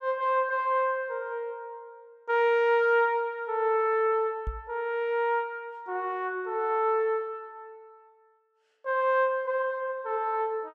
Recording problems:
microphone thump; at 4.5 s; peak -3 dB vs average level

